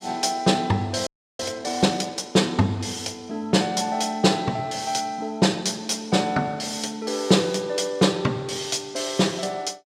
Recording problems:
frozen audio; at 1 s

